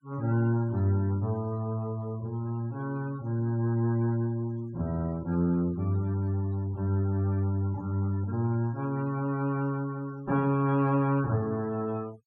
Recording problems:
noise reduction artefacts; signal-to-artefact ratio 24 dB

